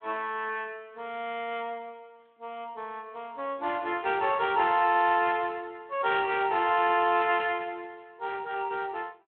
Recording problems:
phone line; 240 Hz to 3.5 kHz, Speex

